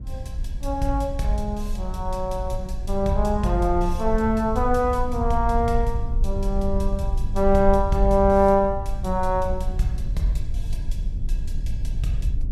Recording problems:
rumble; below 64 Hz, SNR 6 dB

